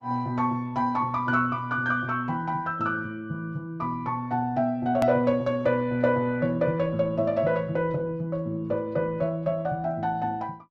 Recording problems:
lossy compression; Opus, log-spectral distance 2 dB, nothing above 13.1 kHz
hard cut with a click; at 5 s

